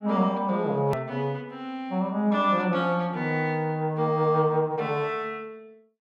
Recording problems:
edit click; at 1 s

